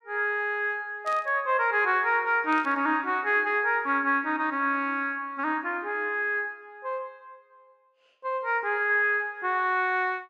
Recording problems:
burst of static; at 1 s and at 2.5 s; peak -15 dB vs average level

